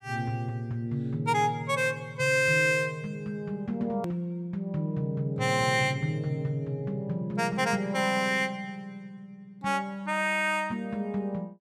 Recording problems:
hard cut with a click; at 4 s

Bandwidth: 15 kHz